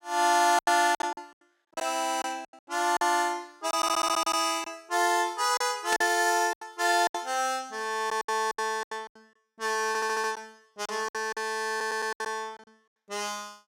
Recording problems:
packet loss; 12% of the sound replaced, filled with silence
stutter; at 4 s, at 10 s and at 12 s
burst of static; at 6 s; peak -1 dB vs average level

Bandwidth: 16 kHz